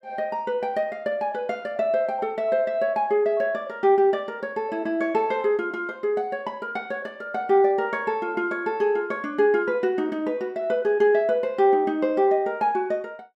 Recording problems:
none

